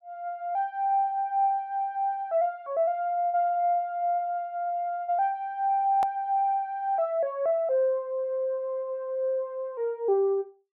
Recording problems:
edit click; at 6 s

